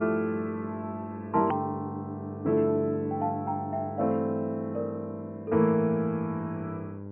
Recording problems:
treble missing; nothing above 3.1 kHz
electrical hum; 50 Hz, harmonics up to 1 kHz, SNR 12 dB
edit click; at 1.5 s

